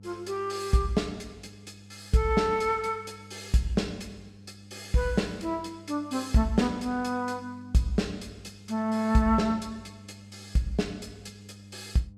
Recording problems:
electrical hum; 50 Hz, harmonics up to 500 Hz, SNR 21 dB

